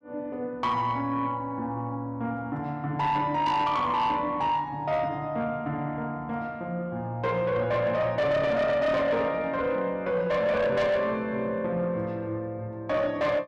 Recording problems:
distortion; soft clipping, signal-to-distortion ratio 10 dB

